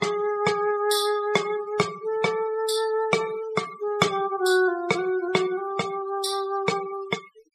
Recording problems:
denoising artefacts; signal-to-artefact ratio 15 dB

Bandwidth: 14.5 kHz